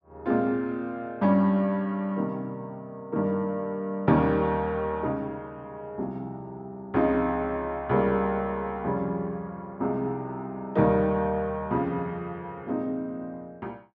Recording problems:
none

